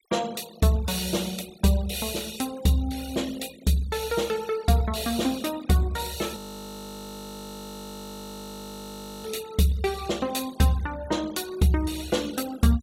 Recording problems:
noise reduction artefacts; signal-to-artefact ratio 18 dB
audio freezing; at 6.5 s for 3 s

